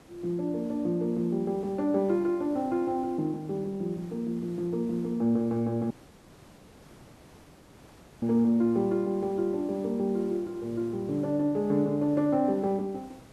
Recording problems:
background hiss; slope -6 dB per octave, SNR 23 dB
dropout; at 6 s for 2.5 s

